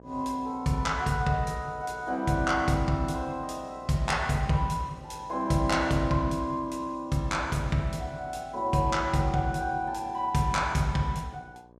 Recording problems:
hum; 60 Hz, harmonics up to 1.2 kHz, SNR 25 dB

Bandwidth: 14.5 kHz